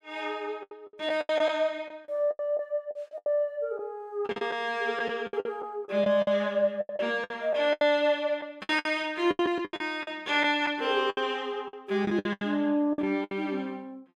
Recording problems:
lost packets; 14% of the sound replaced, filled with the last packet

